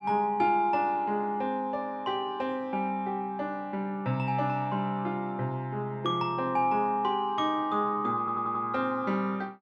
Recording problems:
audio stuttering; at 8 s

